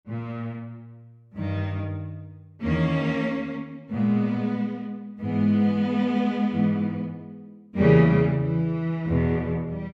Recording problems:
none

